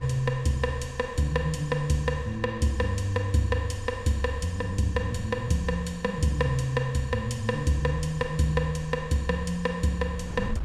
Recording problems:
wind noise; below 90 Hz, SNR 18 dB

